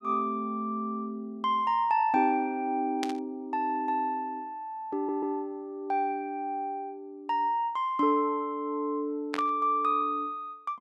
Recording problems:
burst of static; at 3 s and at 9.5 s; peak 0 dB vs average level
stutter; at 5 s

